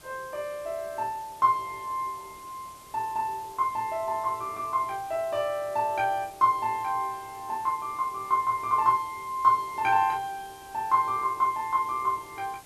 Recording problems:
hiss; SNR 22 dB

